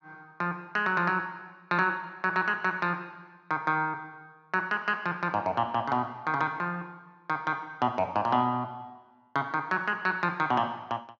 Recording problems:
none

